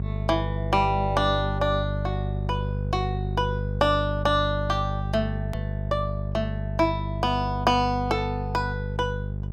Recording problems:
mains hum; 50 Hz, harmonics up to 450 Hz, SNR 3 dB
edit click; at 5.5 s

